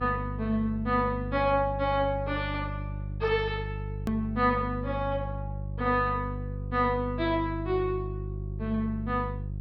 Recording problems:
treble cut off; nothing above 5.5 kHz
hum; 50 Hz, harmonics up to 350 Hz, SNR 6 dB
click at an edit; at 4 s

